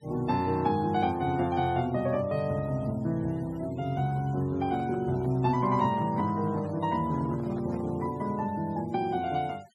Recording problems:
denoising artefacts; signal-to-artefact ratio 25 dB
microphone handling noise; from 4.5 to 8.5 s; peak -13 dB vs average level

